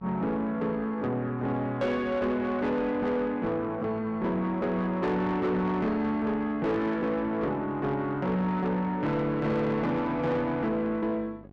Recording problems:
distortion; soft clipping, signal-to-distortion ratio 10 dB
hum; 50 Hz, harmonics up to 1.1 kHz, SNR 23 dB

